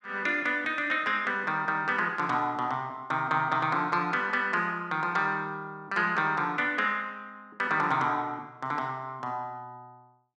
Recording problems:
none

